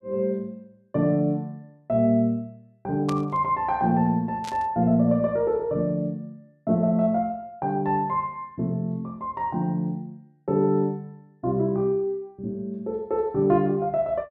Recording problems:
static burst; at 3 s and at 4.5 s; peak -8 dB vs average level

